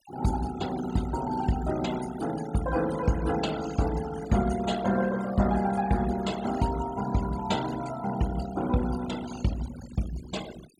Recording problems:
noise reduction artefacts; signal-to-artefact ratio 14 dB

